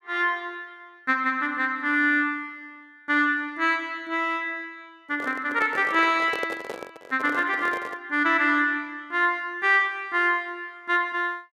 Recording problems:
handling noise; from 5 to 8 s; peak -3 dB vs average level

